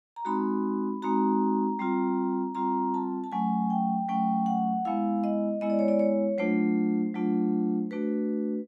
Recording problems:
none

